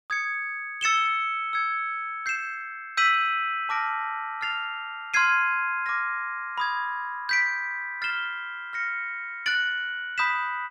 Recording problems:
none

